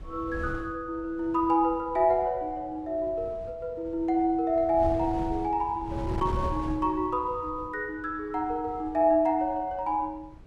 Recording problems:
wind noise; below 180 Hz, SNR 13 dB

